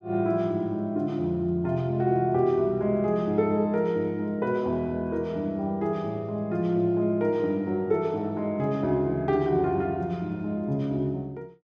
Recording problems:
none

